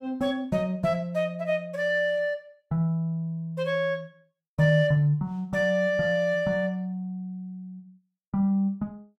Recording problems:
none

